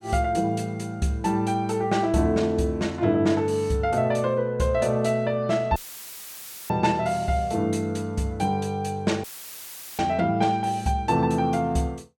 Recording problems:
audio cutting out; at 6 s for 1 s and at 9 s for 1 s; filled with static

